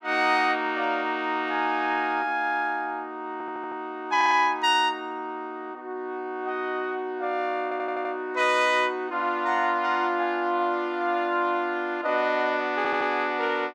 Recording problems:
stutter; 4 times, first at 3.5 s

